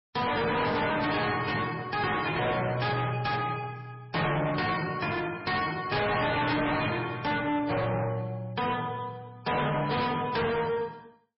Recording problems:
codec artefacts; MP3, log-spectral distance 5 dB, nothing above 5.3 kHz
distorted audio; hard clipping, signal-to-distortion ratio 6 dB

